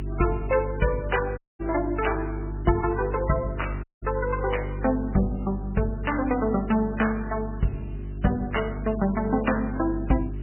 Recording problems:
codec artefacts; MP3, log-spectral distance 6 dB, nothing above 3 kHz
electrical hum; 50 Hz, harmonics up to 400 Hz, SNR 7 dB
hiss; SNR 29 dB
audio cutting out; at 1.5 s and at 4 s

